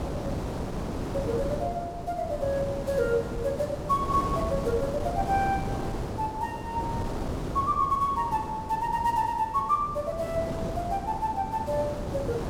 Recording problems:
wind on the microphone; below 550 Hz, SNR 5 dB

